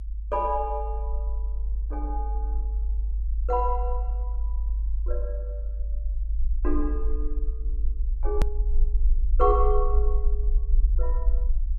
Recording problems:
low-frequency rumble; below 52 Hz, SNR -2 dB
click at an edit; at 8.5 s

